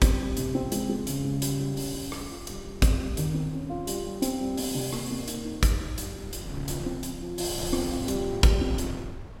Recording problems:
wind noise; below 230 Hz, SNR 13 dB

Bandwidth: 16.5 kHz